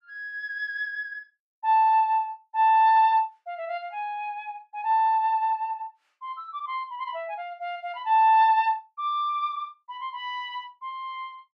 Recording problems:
none

